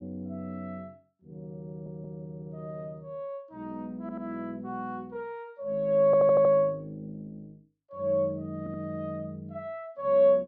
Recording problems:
stutter; 4 times, first at 1.5 s

